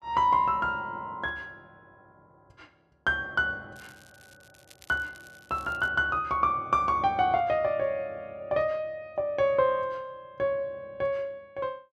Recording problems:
crackle; from 4 to 6 s; loose cable, SNR 27 dB

